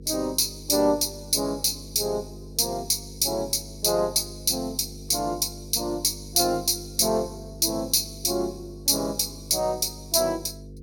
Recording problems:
hum; 50 Hz, harmonics up to 500 Hz, SNR 18 dB

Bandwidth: 17 kHz